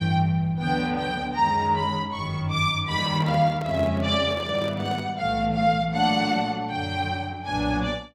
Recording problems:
handling noise; from 3 to 5 s; peak -8 dB vs average level

